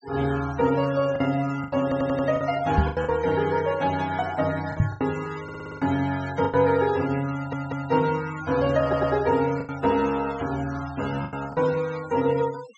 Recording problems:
treble cut off; nothing above 8 kHz
noise reduction artefacts; signal-to-artefact ratio 18 dB
lost packets; 6% of the sound replaced, filled with the last packet
stutter; 4 times, first at 2 s
knock on the microphone; at 3 s and at 5 s; peak +7 dB vs average level

